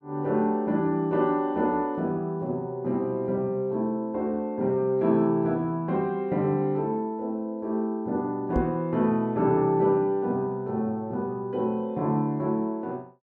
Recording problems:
microphone thump; at 8.5 s; peak +2 dB vs average level

